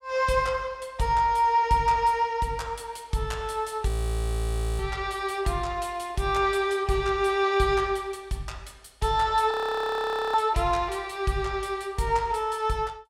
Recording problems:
audio freezing; at 4 s for 1 s and at 9.5 s for 1 s

